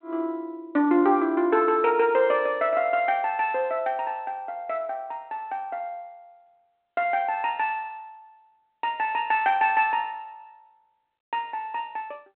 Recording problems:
telephone audio; 220 Hz to 3.5 kHz, G.726

